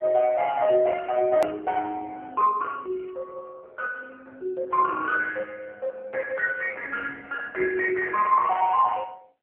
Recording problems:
telephone audio; 320 Hz to 2.1 kHz, AMR-NB
edit click; at 1.5 s

